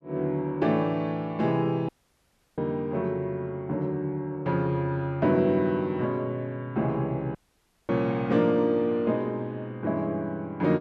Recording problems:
dropout; at 2 s for 0.5 s and at 7.5 s for 0.5 s

